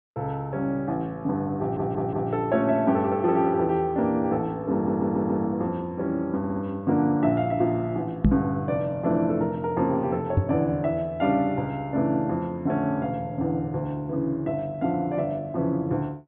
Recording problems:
treble cut off; nothing above 4 kHz
stutter; at 1.5 s, at 4.5 s and at 6.5 s
microphone bump; at 8.5 s and at 10 s; peak +9 dB vs average level

